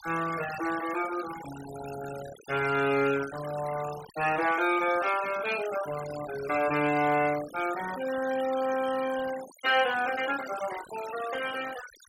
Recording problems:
denoising artefacts; signal-to-artefact ratio 13 dB

